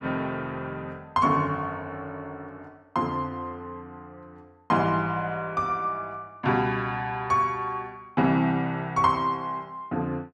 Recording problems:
none

